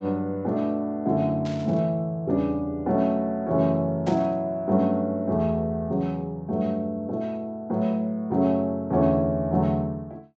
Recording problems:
treble cut off; nothing above 8 kHz
burst of static; at 1.5 s and at 4 s; peak -11 dB vs average level

